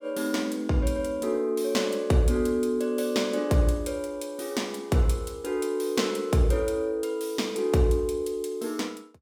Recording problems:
none

